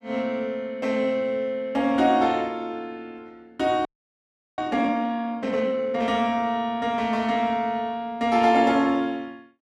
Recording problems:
frozen audio; at 4 s for 0.5 s

